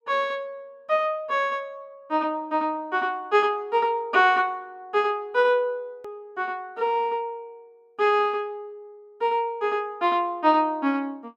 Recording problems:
hard cut with a click; at 6 s

